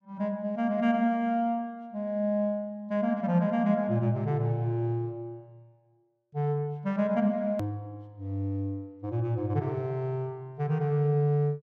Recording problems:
edit click; at 7.5 s

